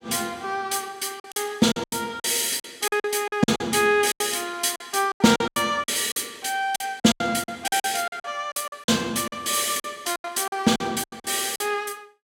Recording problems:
lost packets; 15% of the sound replaced, filled with silence

